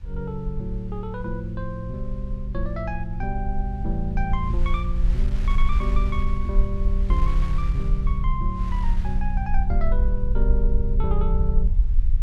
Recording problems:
low-frequency rumble; below 52 Hz, SNR -4 dB
wind on the microphone; below 2.9 kHz, SNR 17 dB

